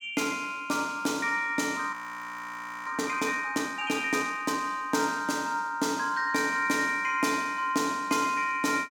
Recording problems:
frozen audio; at 2 s for 1 s

